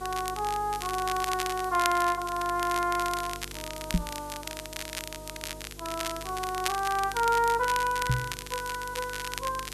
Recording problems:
hum; 50 Hz, harmonics up to 500 Hz, SNR 18 dB
background hiss; slope 0 dB per octave, SNR 18 dB
crackling; vinyl, SNR 8 dB
microphone bump; at 4 s and at 8 s; peak +7 dB vs average level

